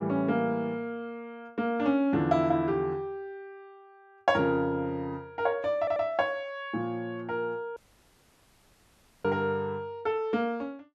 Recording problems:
audio stuttering; at 6 s
dropout; at 8 s for 1.5 s

